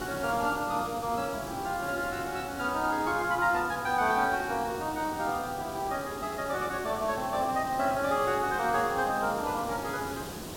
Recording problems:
background hiss; SNR 11 dB

